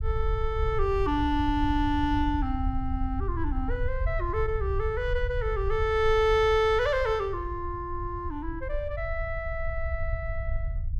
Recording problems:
low-frequency rumble; below 72 Hz, SNR 5 dB

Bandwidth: 15 kHz